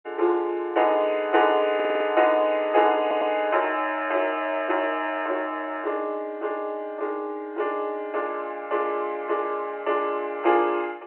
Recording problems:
phone line; 320 Hz to 3.1 kHz, G.711
audio stuttering; at 2 s and at 3 s

